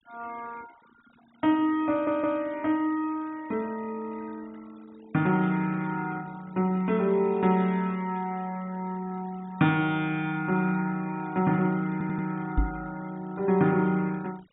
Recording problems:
treble missing; nothing above 3.8 kHz
noise reduction artefacts; signal-to-artefact ratio 25 dB
audio stuttering; at 2 s and at 12 s
microphone bump; at 13 s; peak +5 dB vs average level

